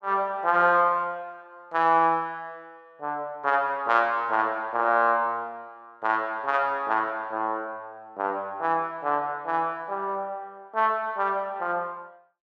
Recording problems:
none

